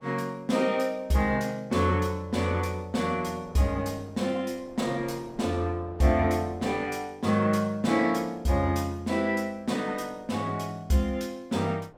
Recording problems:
wind noise; below 720 Hz, SNR 23 dB

